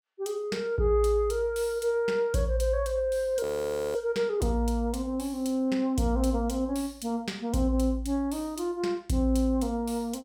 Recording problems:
audio freezing; at 3.5 s for 0.5 s

